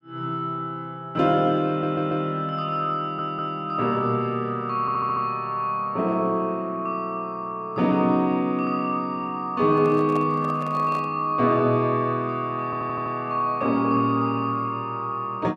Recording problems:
stutter; 4 times, first at 1.5 s
handling noise; from 9.5 to 11 s; peak -8 dB vs average level

